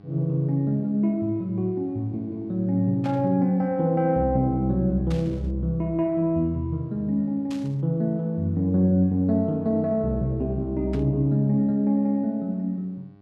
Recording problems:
hum; 50 Hz, harmonics up to 1.5 kHz, SNR 27 dB
static burst; 4 times, first at 3 s; peak -12 dB vs average level

